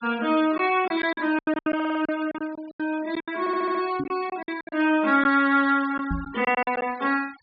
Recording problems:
low-pass filter; nothing above 5 kHz
noise reduction artefacts; signal-to-artefact ratio 20 dB
packet loss; 12% of the sound replaced, filled with silence
audio stuttering; at 2 s and at 3.5 s
microphone bump; at 4 s and at 6 s; peak -2 dB vs average level

